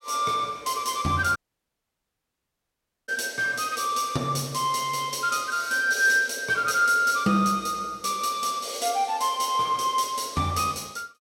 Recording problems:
audio cutting out; at 1.5 s for 1.5 s

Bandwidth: 16.5 kHz